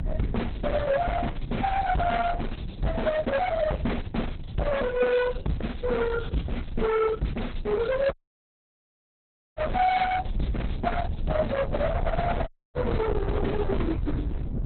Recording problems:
codec artefacts; Opus, log-spectral distance 4 dB, nothing above 4.1 kHz
distortion; hard clipping, signal-to-distortion ratio 8 dB
low-frequency rumble; below 120 Hz, SNR 8 dB
dropout; at 8 s for 1.5 s and at 12 s

